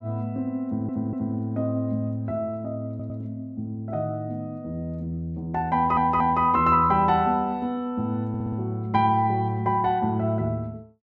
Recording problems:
audio stuttering; 4 times, first at 0.5 s

